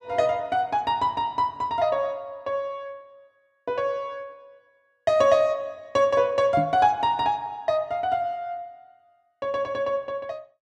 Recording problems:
microphone thump; at 6.5 s; peak 0 dB vs average level

